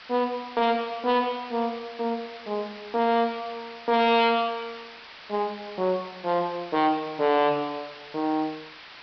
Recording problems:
treble missing; nothing above 5.5 kHz
distorted audio; soft clipping, signal-to-distortion ratio 11 dB
hiss; SNR 17 dB

